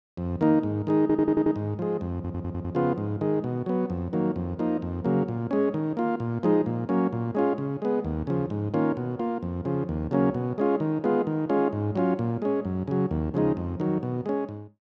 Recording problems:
stutter; at 1 s and at 2 s

